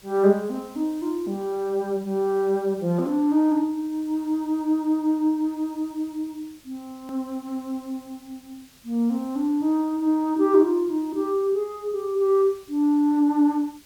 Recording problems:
background hiss; SNR 27 dB
edit click; at 7 s

